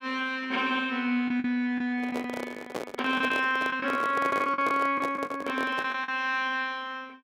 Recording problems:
packet loss; 8% of the sound replaced, filled with the last packet
microphone handling noise; from 2 to 6 s; peak -2 dB vs average level

